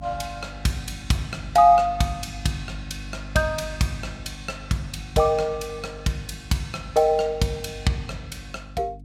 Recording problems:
hum; 50 Hz, harmonics up to 300 Hz, SNR 16 dB

